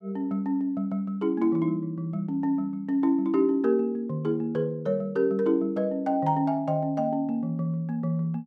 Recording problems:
none

